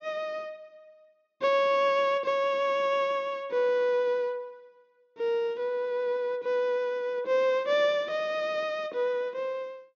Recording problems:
treble missing; nothing above 7.3 kHz

